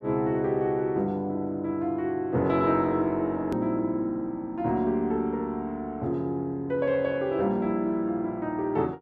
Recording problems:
hard cut with a click; at 3.5 s

